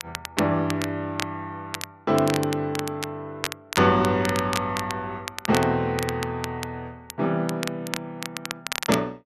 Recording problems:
crackle; vinyl, SNR 8 dB

